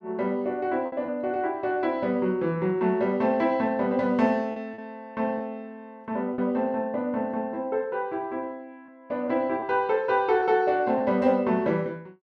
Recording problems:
lost packets; 3% of the sound replaced, filled with repeated pitch periods

